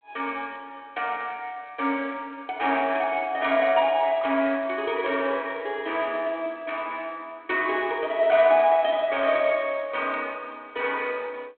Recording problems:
phone line; 240 Hz to 3.5 kHz, G.726

